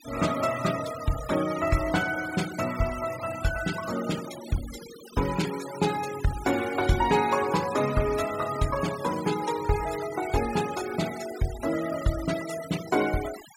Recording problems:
denoising artefacts; signal-to-artefact ratio 13 dB

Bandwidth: 16.5 kHz